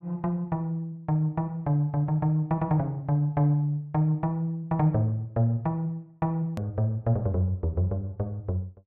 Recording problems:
hard cut with a click; at 6.5 s

